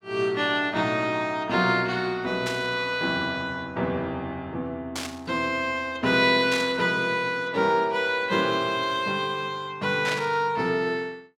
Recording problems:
static burst; 4 times, first at 2.5 s; peak -2 dB vs average level

